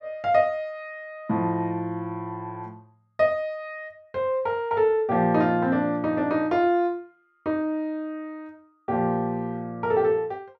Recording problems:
none

